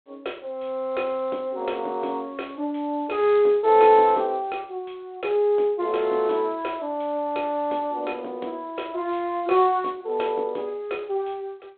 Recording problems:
telephone audio; 260 Hz to 3.9 kHz, G.726

